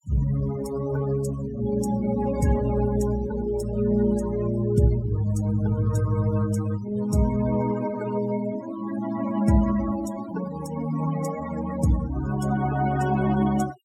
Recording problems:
noise reduction artefacts; signal-to-artefact ratio 14 dB

